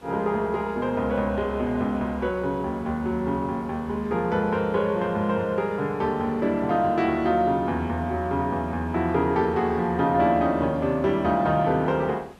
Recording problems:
hiss; slope -5 dB per octave, SNR 26 dB

